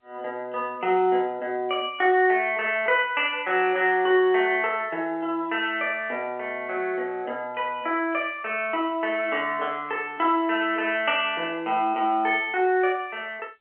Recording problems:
telephone audio; 260 Hz to 3.2 kHz, G.711

